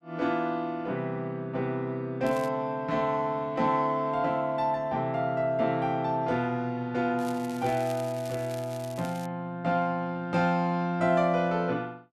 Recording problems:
crackling; at 2.5 s and from 7 to 9.5 s; loose cable, SNR 19 dB

